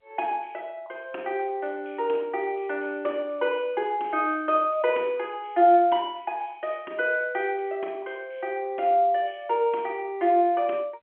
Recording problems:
phone line; 300 Hz to 3.9 kHz, G.711

